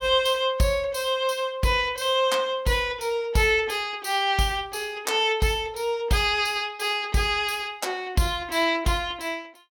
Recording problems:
none

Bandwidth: 17.5 kHz